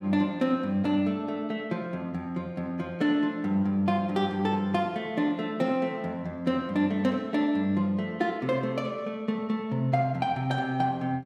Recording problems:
none

